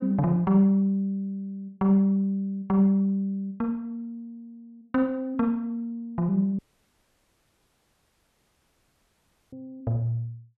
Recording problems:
audio cutting out; at 6.5 s for 3 s

